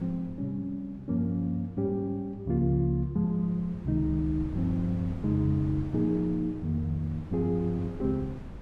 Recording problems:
hum; 60 Hz, harmonics up to 360 Hz, SNR 28 dB
wind noise; below 200 Hz, SNR 15 dB

